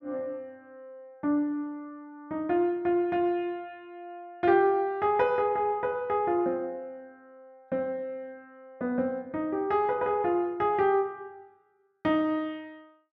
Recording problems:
none

